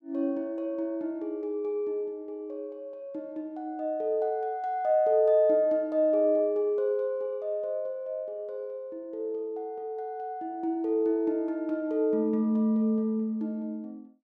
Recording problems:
none

